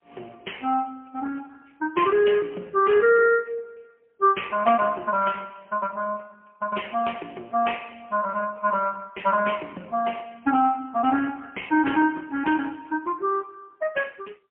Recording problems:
phone line; 240 Hz to 3.1 kHz, AMR-NB, then MP3

